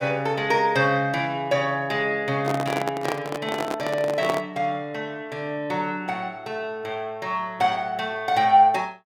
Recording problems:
microphone handling noise; from 2.5 to 4.5 s; peak 0 dB vs average level

